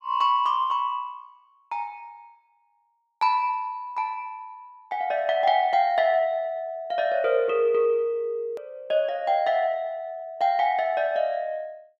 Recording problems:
hard cut with a click; at 8.5 s

